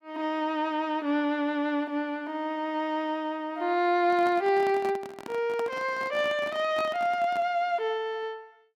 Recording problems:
microphone handling noise; from 4 to 7.5 s; peak -6 dB vs average level

